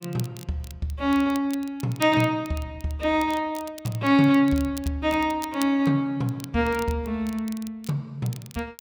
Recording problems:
crackling; vinyl, SNR 19 dB

